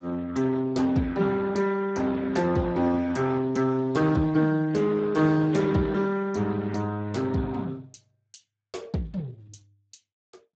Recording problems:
lossy compression; Speex, log-spectral distance 4 dB, nothing above 7.6 kHz

